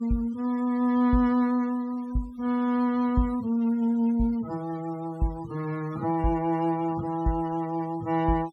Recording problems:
denoising artefacts; signal-to-artefact ratio 23 dB

